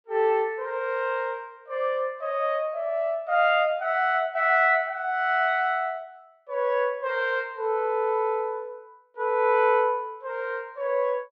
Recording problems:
none

